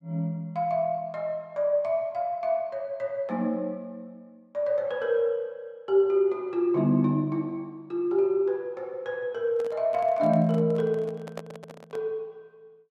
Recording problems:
handling noise; from 9.5 to 12 s; peak -6 dB vs average level

